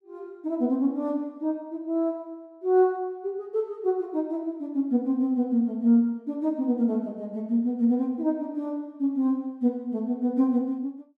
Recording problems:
none

